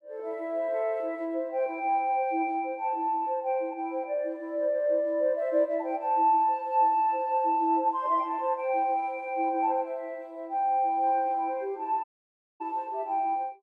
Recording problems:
audio cutting out; at 12 s for 0.5 s

